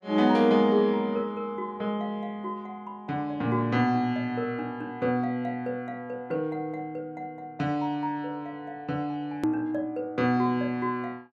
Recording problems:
click at an edit; at 9.5 s

